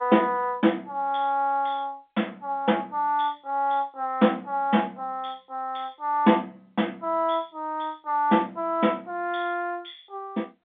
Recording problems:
phone line; 170 Hz to 3.6 kHz, G.711

